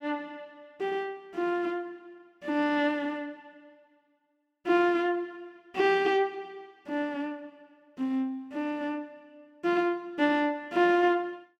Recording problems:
none

